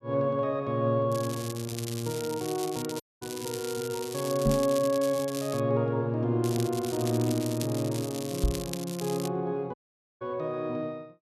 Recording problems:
crackle; from 1 to 5.5 s and from 6.5 to 9.5 s; loose cable, SNR 10 dB
dropout; at 3 s and at 9.5 s
knock on the microphone; at 4.5 s and at 8.5 s; peak +6 dB vs average level

